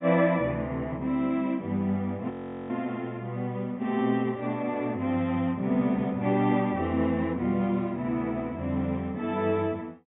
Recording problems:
treble cut off; nothing above 4 kHz
audio freezing; at 2.5 s

